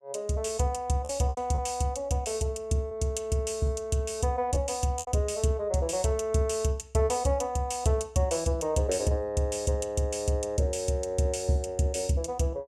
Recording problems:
packet loss; 3% of the sound replaced, filled with repeated pitch periods

